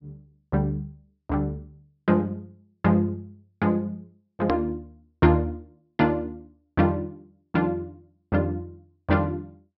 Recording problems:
treble missing; nothing above 5.5 kHz
edit click; at 4.5 s

